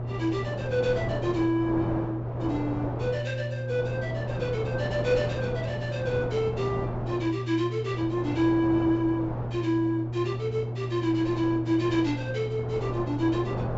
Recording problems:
low-pass filter; nothing above 8 kHz
hum; 60 Hz, harmonics up to 600 Hz, SNR 5 dB
wind on the microphone; below 720 Hz, SNR 8 dB

